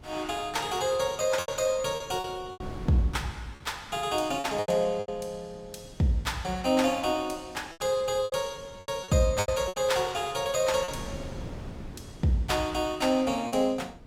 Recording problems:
wind on the microphone; below 350 Hz, SNR 18 dB
lost packets; 8% of the sound replaced, filled with repeated pitch periods

